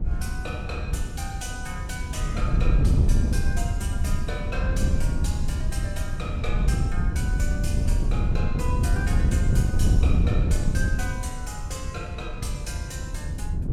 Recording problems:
wind noise; below 110 Hz, SNR -8 dB

